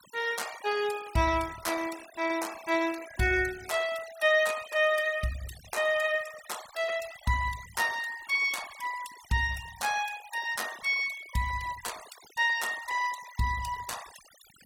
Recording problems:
noise reduction artefacts; signal-to-artefact ratio 16 dB

